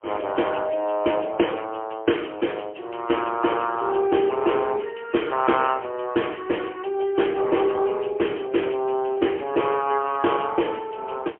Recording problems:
phone line; 260 Hz to 3.2 kHz, AMR-NB, then MP3
crackling; from 8.5 to 10 s; loose cable, SNR 27 dB

